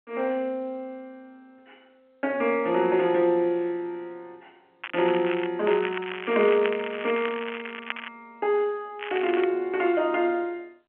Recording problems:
phone line; 190 Hz to 3.2 kHz, G.711
crackle; at 5 s, from 5.5 to 8 s and at 9 s; loose cable, SNR 10 dB

